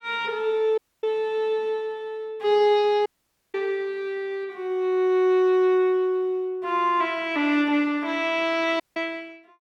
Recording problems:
dropout; at 1 s, at 3 s and at 9 s

